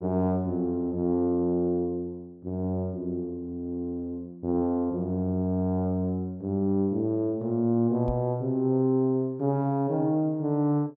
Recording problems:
microphone thump; at 8 s; peak -3 dB vs average level

